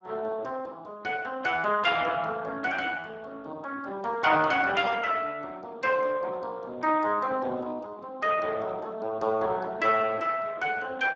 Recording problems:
lossy compression; Speex, log-spectral distance 4 dB

